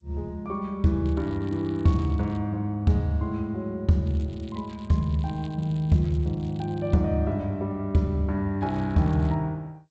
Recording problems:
lossy compression; G.722, log-spectral distance 3 dB, nothing above 17.7 kHz
crackling; from 1 to 2.5 s, from 4 to 7 s and at 8.5 s; loose cable, SNR 27 dB

